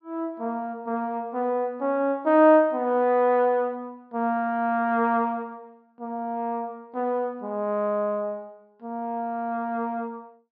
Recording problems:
treble missing; nothing above 5.5 kHz

